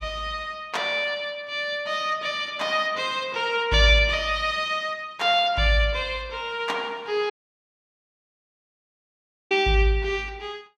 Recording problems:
dropout; at 7.5 s for 2 s

